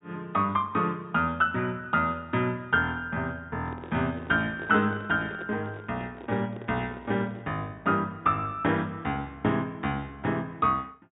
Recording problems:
treble cut off; nothing above 4 kHz
microphone handling noise; from 3.5 to 7.5 s; peak -8 dB vs average level

